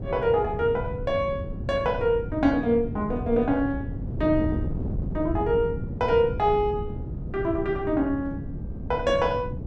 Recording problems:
wind noise; below 200 Hz, SNR 8 dB

